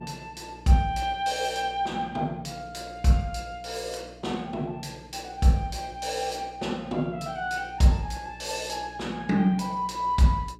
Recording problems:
electrical hum; 60 Hz, harmonics up to 420 Hz, SNR 22 dB

